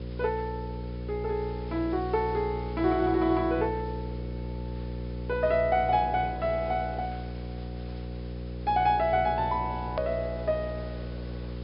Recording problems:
low-pass filter; nothing above 5.5 kHz
hum; 60 Hz, harmonics up to 540 Hz, SNR 8 dB
hiss; SNR 24 dB
hard cut with a click; at 10 s

